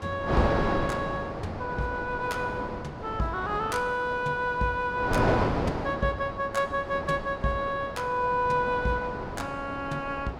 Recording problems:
wind on the microphone; below 860 Hz, SNR 3 dB

